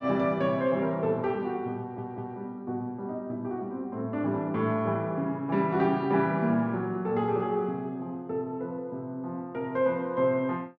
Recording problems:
audio stuttering; at 2 s

